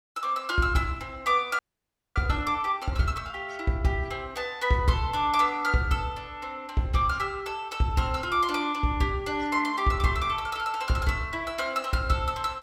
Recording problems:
audio freezing; at 1.5 s for 0.5 s

